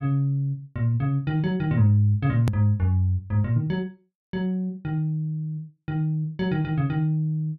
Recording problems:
click at an edit; at 2.5 s

